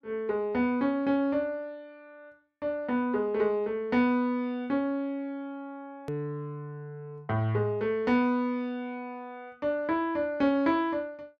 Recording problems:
hard cut with a click; at 6 s

